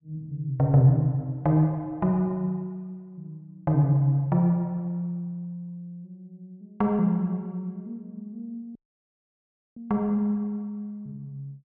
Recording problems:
audio cutting out; at 9 s for 1 s

